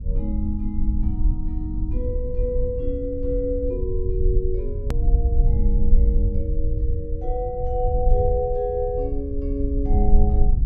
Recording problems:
treble missing; nothing above 8 kHz
low-frequency rumble; below 64 Hz, SNR -3 dB
hard cut with a click; at 5 s

